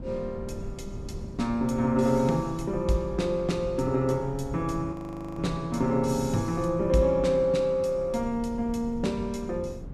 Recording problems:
wind noise; below 180 Hz, SNR 14 dB
frozen audio; at 5 s

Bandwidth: 14.5 kHz